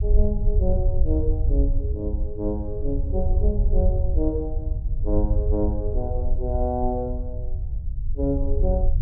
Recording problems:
rumble; below 68 Hz, SNR -3 dB

